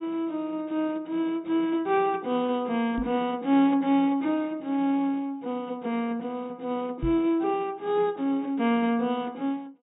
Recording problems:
treble missing; nothing above 4 kHz
microphone thump; at 3 s and at 7 s; peak -1 dB vs average level

